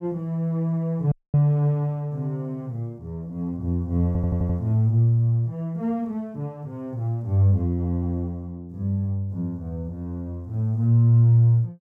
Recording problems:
dropout; at 1 s
audio stuttering; at 4 s

